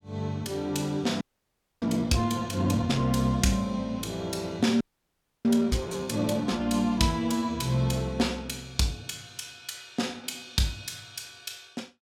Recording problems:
frozen audio; at 1 s for 0.5 s and at 5 s for 0.5 s

